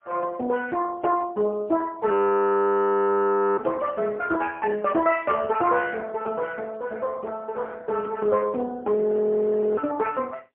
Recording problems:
telephone audio; 260 Hz to 2.6 kHz, AMR-NB, then MP3
audio freezing; at 2 s for 1.5 s and at 9 s for 1 s

